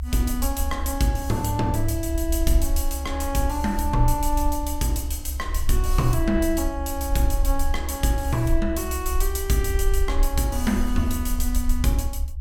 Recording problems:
rumble; below 66 Hz, SNR 3 dB

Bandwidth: 17 kHz